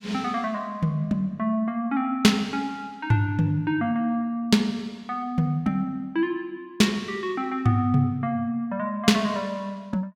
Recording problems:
none

